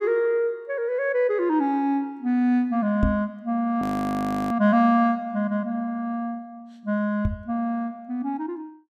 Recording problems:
microphone bump; at 3 s and at 7.5 s; peak +4 dB vs average level
audio freezing; at 4 s for 0.5 s

